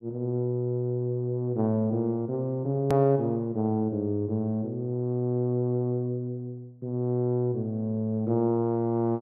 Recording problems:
click at an edit; at 3 s

